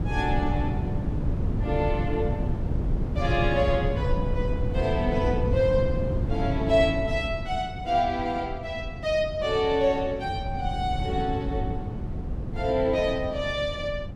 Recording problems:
wind on the microphone; below 170 Hz, SNR 3 dB

